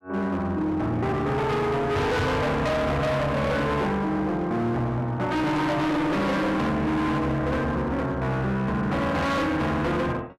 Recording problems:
distorted audio; hard clipping, uneven, signal-to-distortion ratio 6 dB

